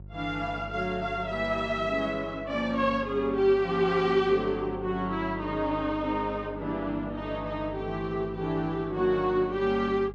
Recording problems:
hum; 50 Hz, harmonics up to 550 Hz, SNR 16 dB

